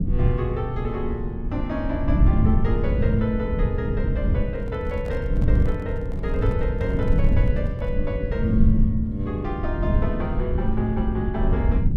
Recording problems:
low-frequency rumble; below 110 Hz, SNR -3 dB
microphone handling noise; from 4.5 to 8 s; peak -10 dB vs average level

